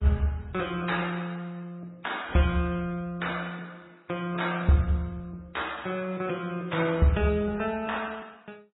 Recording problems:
codec artefacts; AAC, then MP3, log-spectral distance 4 dB, nothing above 3.8 kHz

